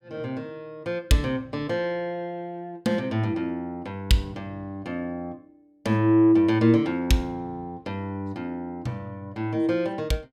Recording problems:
none

